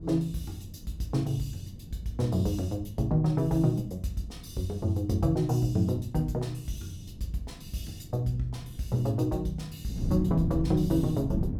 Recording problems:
wind on the microphone; below 180 Hz, SNR 10 dB

